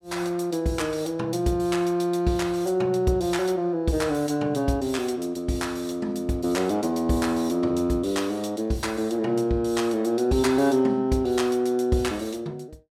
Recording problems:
none

